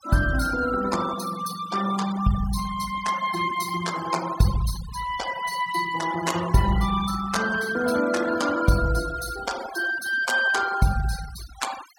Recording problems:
noise reduction artefacts; signal-to-artefact ratio 13 dB

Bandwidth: 17.5 kHz